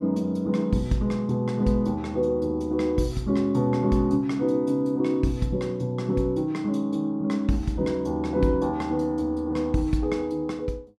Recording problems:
none

